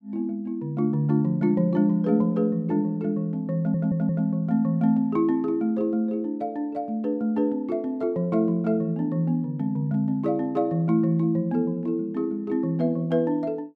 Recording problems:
audio stuttering; at 3.5 s

